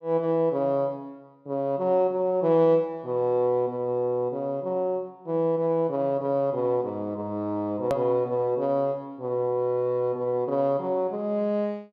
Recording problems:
edit click; at 8 s

